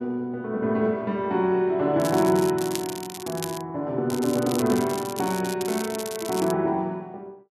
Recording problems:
crackle; from 2 to 3.5 s and from 4 to 6.5 s; loose cable, SNR 11 dB

